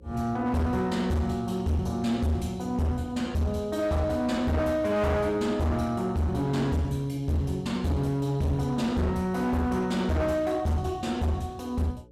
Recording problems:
distortion; hard clipping, signal-to-distortion ratio 8 dB
hum; 60 Hz, harmonics up to 540 Hz, SNR 26 dB

